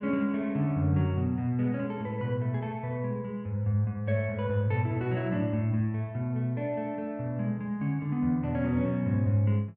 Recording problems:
none

